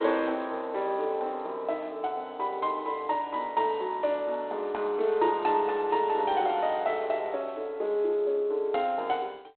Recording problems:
telephone audio; 280 Hz to 3.6 kHz, G.726

